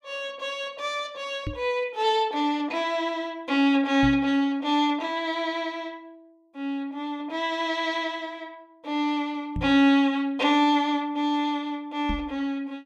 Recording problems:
microphone bump; 4 times, first at 1.5 s; peak -1 dB vs average level

